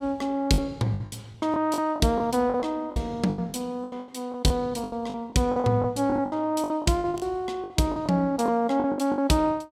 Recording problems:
packet loss; 16% of the sound replaced, filled with the last packet

